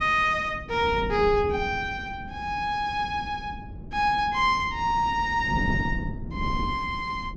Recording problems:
wind noise; below 230 Hz, SNR 10 dB

